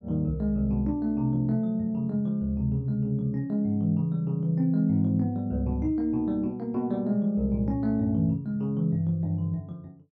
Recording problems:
none

